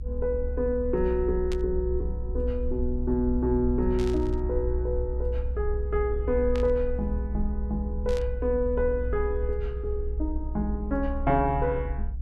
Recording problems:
rumble; below 62 Hz, strongest tone 60 Hz, SNR 3 dB
static burst; 4 times, first at 1.5 s; peak -7 dB vs average level

